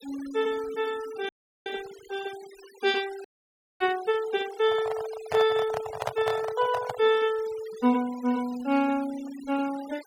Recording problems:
denoising artefacts; signal-to-artefact ratio 18 dB
audio freezing; at 1.5 s and at 3.5 s for 0.5 s
microphone handling noise; from 4.5 to 7 s; peak +2 dB vs average level

